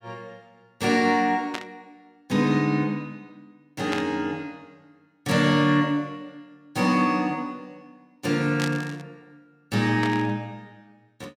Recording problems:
static burst; 4 times, first at 1.5 s; peak -2 dB vs average level

